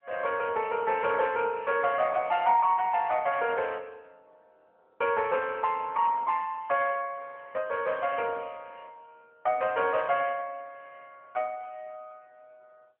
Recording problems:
telephone audio; 110 Hz to 3.1 kHz, AMR-NB

